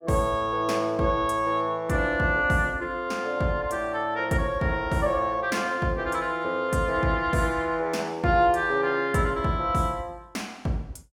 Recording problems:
none

